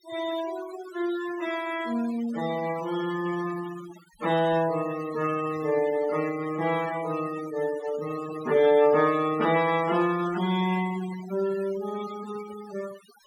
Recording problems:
denoising artefacts; signal-to-artefact ratio 15 dB

